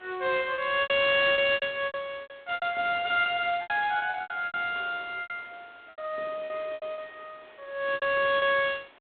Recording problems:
telephone audio; 240 Hz to 3.9 kHz, G.726
background hiss; SNR 27 dB
packet loss; 15% of the sound replaced, filled with repeated pitch periods

